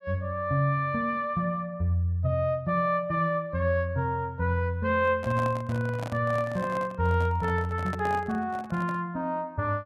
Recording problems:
microphone handling noise; from 5 to 9 s; peak -6 dB vs average level

